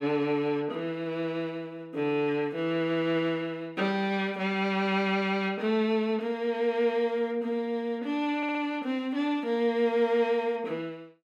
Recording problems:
audio stuttering; at 8.5 s

